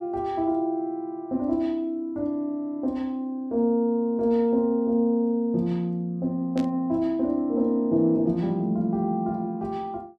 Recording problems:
static burst; at 6.5 s; peak -12 dB vs average level

